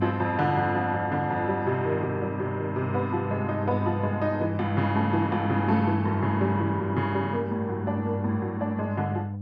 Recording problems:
hum; 50 Hz, harmonics up to 500 Hz, SNR 4 dB

